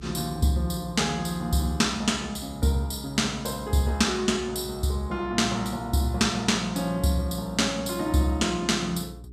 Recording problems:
electrical hum; 60 Hz, harmonics up to 420 Hz, SNR 19 dB

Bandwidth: 14.5 kHz